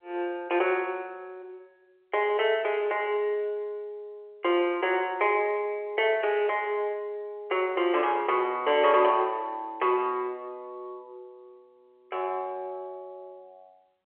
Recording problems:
telephone audio; 320 Hz to 3.4 kHz, G.711

